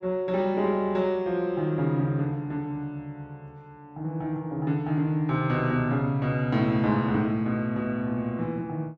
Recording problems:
none

